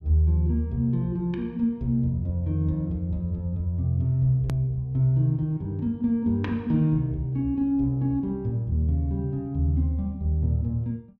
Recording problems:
click at an edit; at 4.5 s

